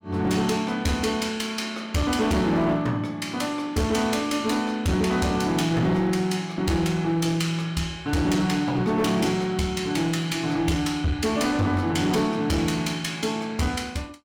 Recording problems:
distorted audio; hard clipping, uneven, signal-to-distortion ratio 11 dB

